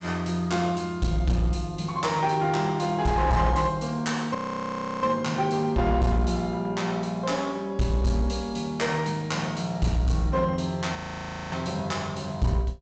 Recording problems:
treble cut off; nothing above 8 kHz
distortion; hard clipping, uneven, signal-to-distortion ratio 11 dB
audio freezing; at 4.5 s for 0.5 s and at 11 s for 0.5 s

